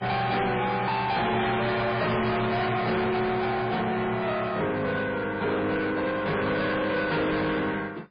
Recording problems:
lossy compression; MP3, log-spectral distance 4 dB, nothing above 4.5 kHz
distorted audio; soft clipping, signal-to-distortion ratio 6 dB

